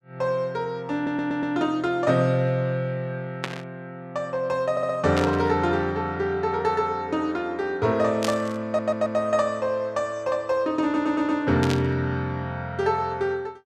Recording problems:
audio stuttering; 4 times, first at 1 s
static burst; 4 times, first at 3.5 s; peak 0 dB vs average level

